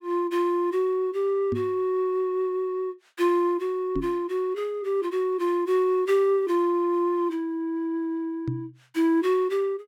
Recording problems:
microphone thump; at 1.5 s, at 4 s and at 8.5 s; peak -1 dB vs average level

